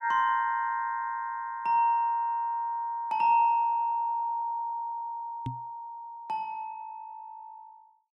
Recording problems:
microphone thump; at 5.5 s; peak -3 dB vs average level

